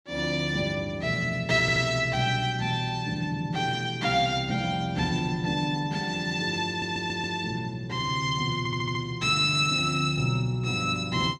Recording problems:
stutter; at 1.5 s, at 6.5 s and at 8.5 s

